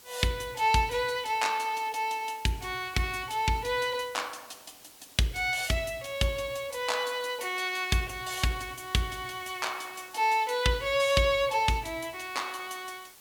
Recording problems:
background hiss; slope 0 dB per octave, SNR 21 dB

